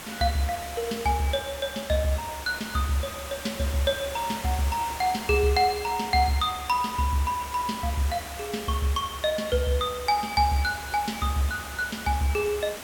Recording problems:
background hiss; slope -3 dB per octave, SNR 11 dB

